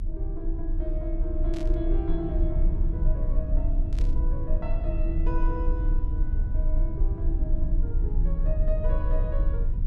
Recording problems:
low-frequency rumble; below 50 Hz, strongest tone 30 Hz, SNR -8 dB
static burst; at 1.5 s and at 4 s; peak -6 dB vs average level

